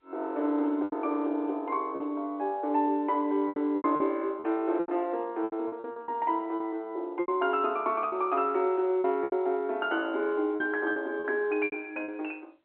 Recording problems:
telephone audio; 260 Hz to 3.4 kHz, G.711
packet loss; 10% of the sound replaced, filled with repeated pitch periods

